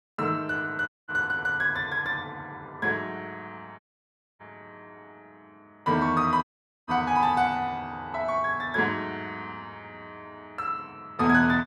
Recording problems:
dropout; at 1 s, at 4 s for 0.5 s and at 6.5 s

